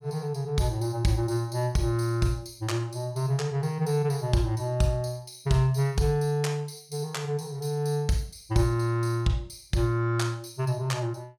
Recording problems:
none

